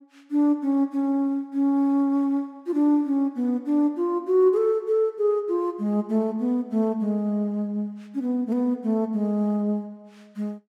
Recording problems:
none

